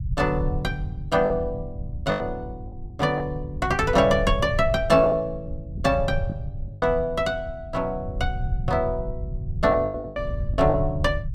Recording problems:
low-frequency rumble; below 110 Hz, SNR 8 dB
packet loss; 6% of the sound replaced, filled with the last packet

